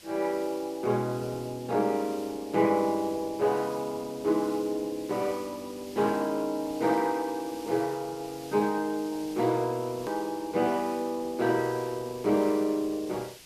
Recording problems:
codec artefacts; Opus, log-spectral distance 2 dB, nothing above 14.1 kHz
hiss; SNR 19 dB
edit click; at 10 s

